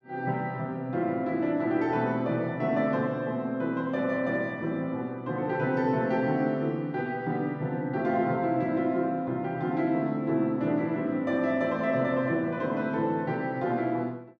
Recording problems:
none

